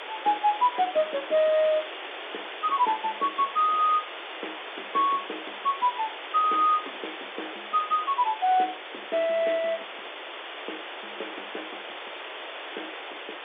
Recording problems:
phone line; 280 Hz to 3.6 kHz, G.711
background hiss; SNR 11 dB

